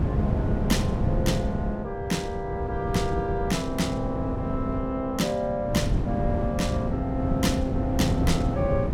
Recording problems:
wind noise; below 210 Hz, SNR 1 dB

